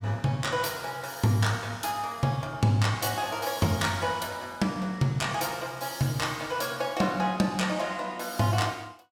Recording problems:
none

